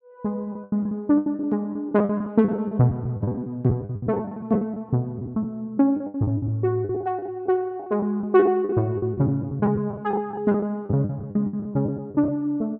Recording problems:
packet loss; 16% of the sound replaced, filled with the last packet

